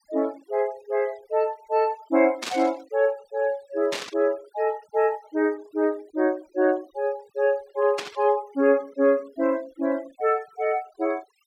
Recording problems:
denoising artefacts; signal-to-artefact ratio 27 dB
static burst; at 2.5 s, at 4 s and at 8 s; peak -1 dB vs average level

